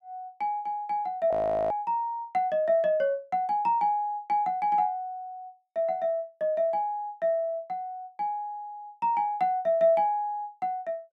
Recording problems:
audio freezing; at 1.5 s

